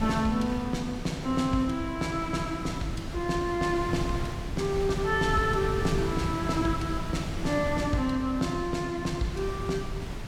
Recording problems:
wind on the microphone; below 250 Hz, SNR 7 dB

